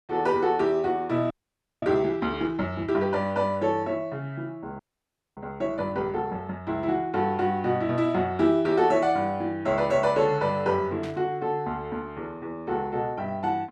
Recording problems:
frozen audio; at 1.5 s for 0.5 s and at 5 s for 0.5 s
burst of static; at 11 s; peak -12 dB vs average level

